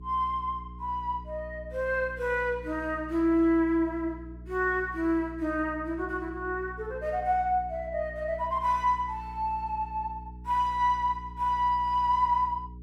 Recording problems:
hum; 60 Hz, harmonics up to 420 Hz, SNR 16 dB

